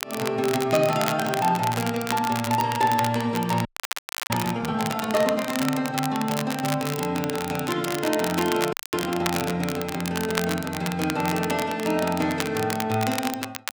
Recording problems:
crackling; vinyl, SNR 7 dB
frozen audio; at 3.5 s for 0.5 s and at 8.5 s

